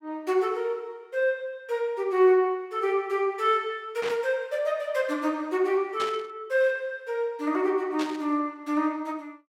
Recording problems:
static burst; at 4 s, at 6 s and at 8 s; peak -4 dB vs average level

